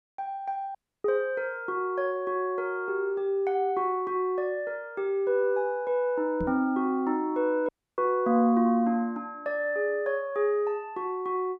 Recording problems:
dropout; at 1 s and at 7.5 s
microphone thump; at 6.5 s; peak -3 dB vs average level

